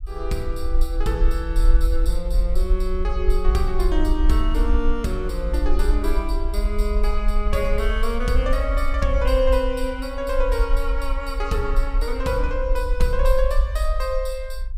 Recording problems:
rumble; below 48 Hz, SNR -1 dB

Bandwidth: 15.5 kHz